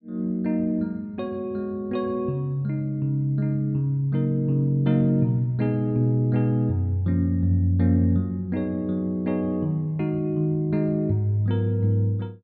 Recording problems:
treble missing; nothing above 4.5 kHz

